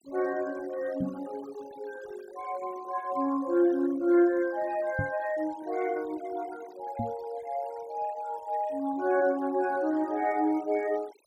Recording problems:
noise reduction artefacts; signal-to-artefact ratio 21 dB
knock on the microphone; at 1 s, at 5 s and at 7 s; peak +1 dB vs average level

